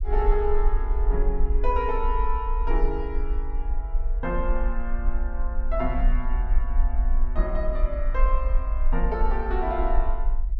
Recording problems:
low-frequency rumble; below 44 Hz, strongest tone 22 Hz, SNR -3 dB

